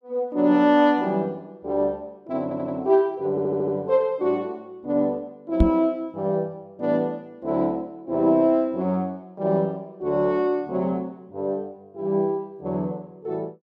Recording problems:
stutter; at 2.5 s and at 3.5 s
knock on the microphone; at 5.5 s; peak +8 dB vs average level

